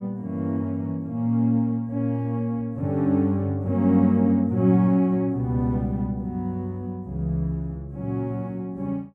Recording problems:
none

